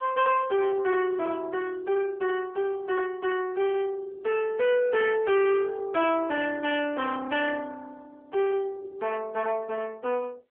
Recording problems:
phone line; 320 Hz to 3.1 kHz, AMR-NB
distortion; soft clipping, signal-to-distortion ratio 6 dB

